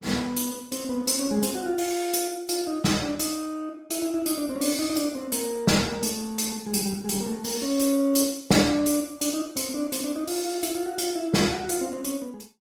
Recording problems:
codec artefacts; Opus, log-spectral distance 6 dB

